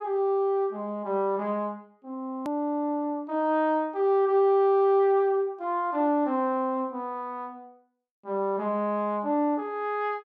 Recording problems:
hard cut with a click; at 2.5 s

